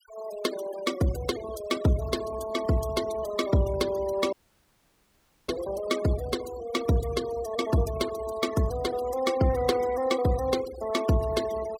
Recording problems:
denoising artefacts; signal-to-artefact ratio 13 dB
audio cutting out; at 4.5 s for 1 s

